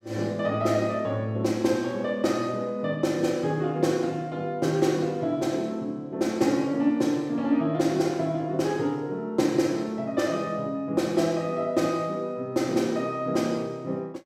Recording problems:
none

